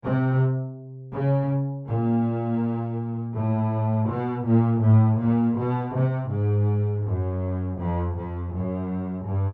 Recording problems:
none

